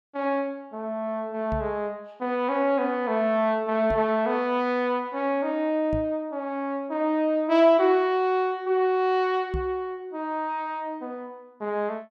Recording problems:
knock on the microphone; 4 times, first at 1.5 s; peak -2 dB vs average level

